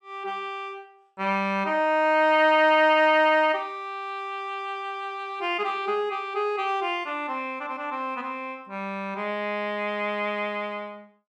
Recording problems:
none

